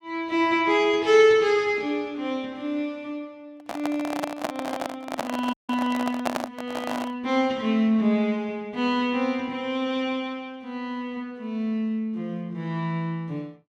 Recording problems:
handling noise; from 3.5 to 7 s; peak +3 dB vs average level
dropout; at 5.5 s

